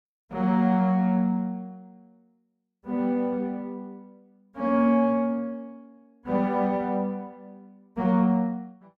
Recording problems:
none

